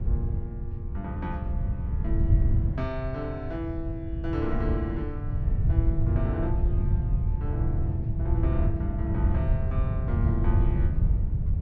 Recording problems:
wind on the microphone; below 110 Hz, SNR -7 dB

